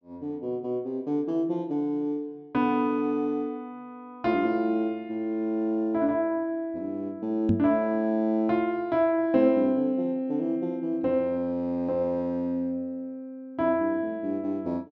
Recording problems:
treble missing; nothing above 8 kHz
microphone bump; at 7.5 s; peak +6 dB vs average level

